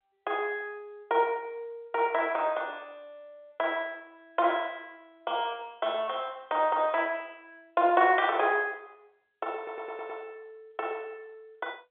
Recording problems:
telephone audio; 320 Hz to 3.5 kHz, G.711
audio stuttering; at 9.5 s

